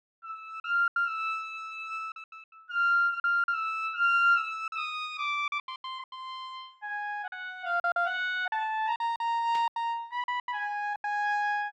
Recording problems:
lost packets; 10% of the sound replaced, filled with silence
burst of static; at 9.5 s; peak -11 dB vs average level

